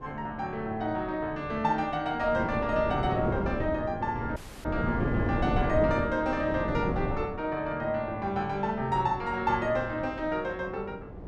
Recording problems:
wind on the microphone; below 400 Hz, SNR 5 dB
dropout; at 4.5 s

